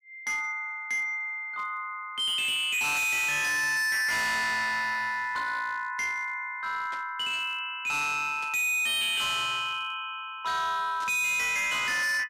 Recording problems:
distortion; hard clipping, signal-to-distortion ratio 6 dB
burst of static; at 7 s, at 8.5 s and at 11 s; peak -13 dB vs average level

